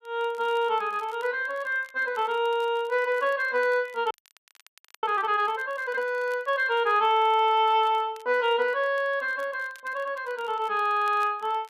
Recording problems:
crackling; vinyl, SNR 30 dB
audio freezing; at 4 s for 1 s

